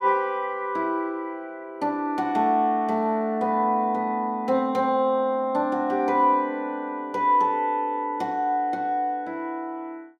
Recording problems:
none

